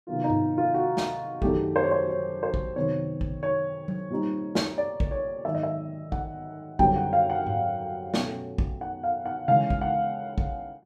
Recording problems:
none

